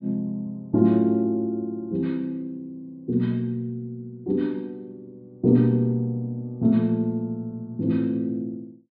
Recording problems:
low-pass filter; nothing above 4.8 kHz

